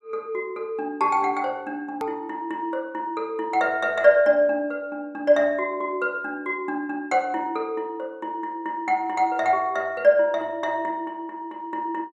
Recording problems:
hard cut with a click; at 2 s

